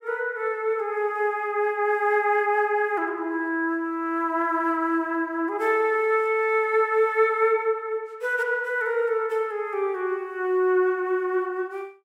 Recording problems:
none

